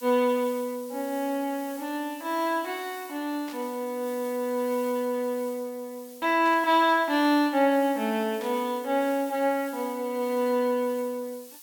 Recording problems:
background hiss; SNR 19 dB
static burst; at 3.5 s, at 6.5 s and at 8.5 s; peak -13 dB vs average level

